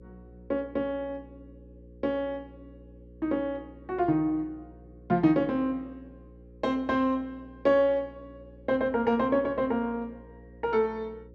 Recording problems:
hum; 60 Hz, harmonics up to 540 Hz, SNR 22 dB

